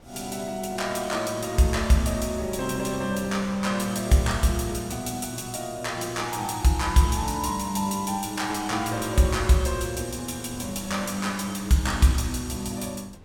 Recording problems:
wind noise; below 410 Hz, SNR 22 dB

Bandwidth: 17 kHz